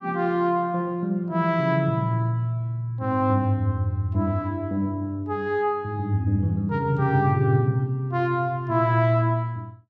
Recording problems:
none

